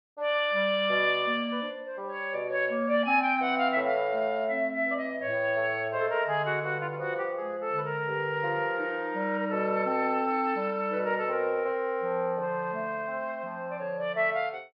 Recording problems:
low-pass filter; nothing above 5.5 kHz

